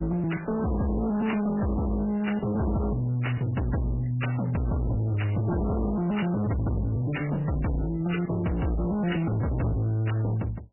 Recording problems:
lossy compression; AAC, then MP3, log-spectral distance 3 dB, nothing above 2.9 kHz
distorted audio; hard clipping, uneven, signal-to-distortion ratio 6 dB

